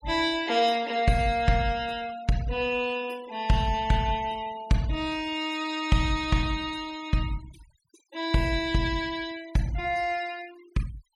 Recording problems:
noise reduction artefacts; signal-to-artefact ratio 21 dB

